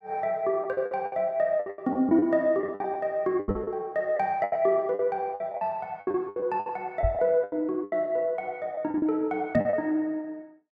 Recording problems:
packet loss; 14% of the sound replaced, filled with the last packet
microphone thump; at 3.5 s, at 7 s and at 9.5 s; peak +5 dB vs average level

